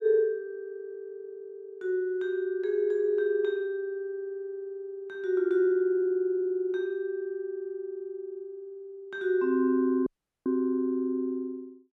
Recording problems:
dropout; at 10 s

